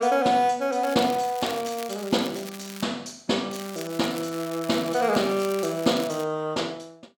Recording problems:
crackling; from 1 to 3 s and from 3.5 to 6 s; loose cable, SNR 15 dB

